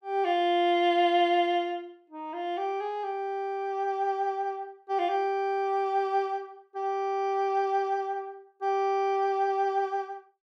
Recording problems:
none

